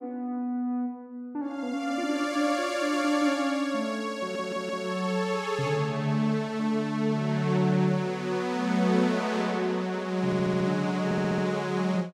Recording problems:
audio stuttering; at 4 s, at 10 s and at 11 s

